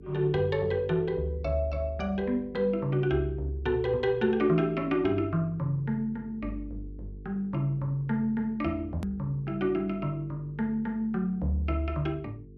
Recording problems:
mains hum; 50 Hz, harmonics up to 450 Hz, SNR 20 dB
hard cut with a click; at 9 s

